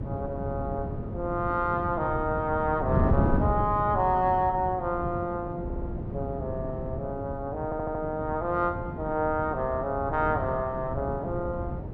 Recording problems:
wind noise; below 250 Hz, SNR 4 dB
stutter; at 5.5 s and at 7.5 s

